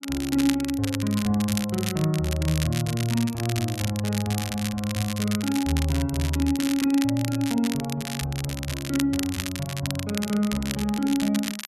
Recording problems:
crackle; vinyl, SNR 8 dB

